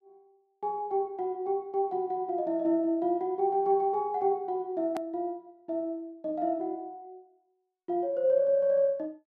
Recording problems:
hard cut with a click; at 5 s

